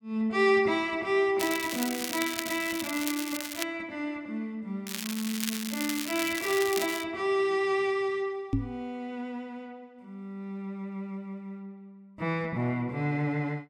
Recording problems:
crackling; from 1.5 to 3.5 s and from 5 to 7 s; loose cable, SNR 5 dB
microphone bump; at 8.5 s; peak +6 dB vs average level

